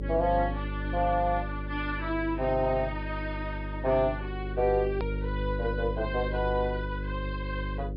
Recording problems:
low-pass filter; nothing above 5.5 kHz
hum; 50 Hz, harmonics up to 550 Hz, SNR 5 dB
click at an edit; at 5 s

